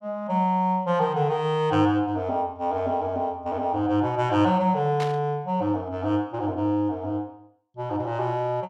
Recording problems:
static burst; at 5 s; peak -6 dB vs average level

